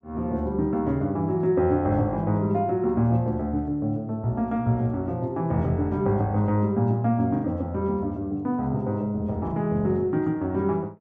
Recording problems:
packet loss; 1.1% of the sound replaced, filled with the last packet

